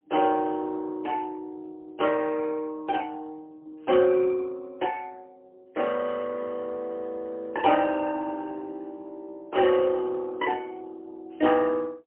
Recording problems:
telephone audio; 260 Hz to 3.1 kHz, AMR-NB, then MP3

